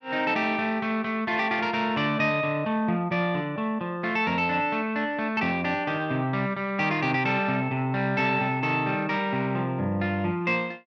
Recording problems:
none

